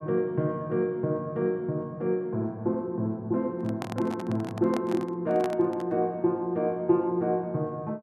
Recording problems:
handling noise; from 3.5 to 6 s; peak -2 dB vs average level

